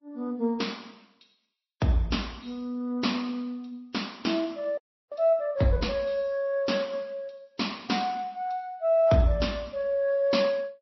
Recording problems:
codec artefacts; MP3, then Vorbis, log-spectral distance 3 dB, nothing above 5.7 kHz
frozen audio; at 5 s

